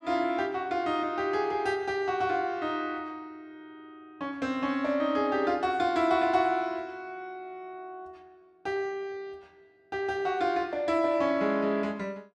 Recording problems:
none

